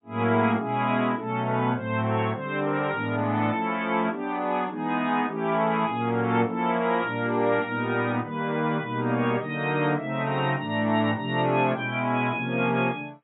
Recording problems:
lossy codec; AAC, log-spectral distance 2 dB, nothing above 3.4 kHz

